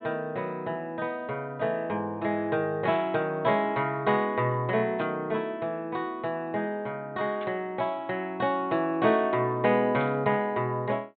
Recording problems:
treble missing; nothing above 4 kHz
burst of static; 4 times, first at 3 s; peak -13 dB vs average level

